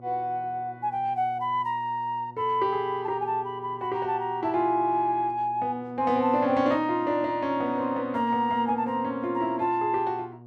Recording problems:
hum; 60 Hz, harmonics up to 1.1 kHz, SNR 21 dB

